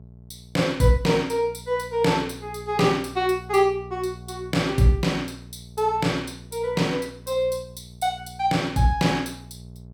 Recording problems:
hum; 60 Hz, harmonics up to 660 Hz, SNR 19 dB

